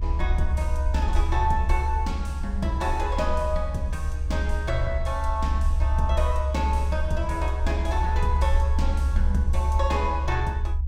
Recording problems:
low-frequency rumble; below 70 Hz, strongest tone 70 Hz, SNR -3 dB

